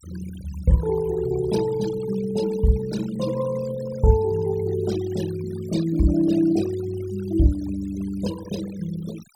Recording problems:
noise reduction artefacts; signal-to-artefact ratio 16 dB

